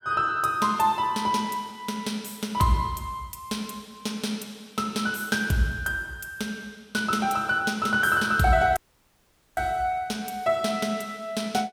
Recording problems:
dropout; at 9 s for 1 s

